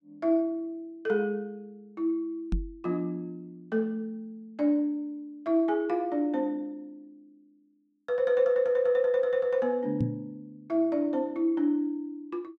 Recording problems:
microphone bump; at 2.5 s and at 10 s; peak +3 dB vs average level

